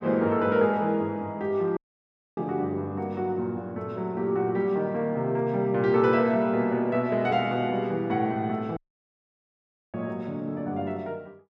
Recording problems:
dropout; at 2 s for 0.5 s and at 9 s for 1 s

